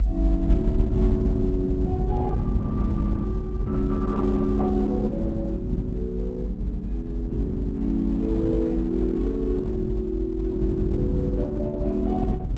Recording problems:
lossy compression; Opus, log-spectral distance 2 dB
low-frequency rumble; below 92 Hz, strongest tone 48 Hz, SNR -1 dB

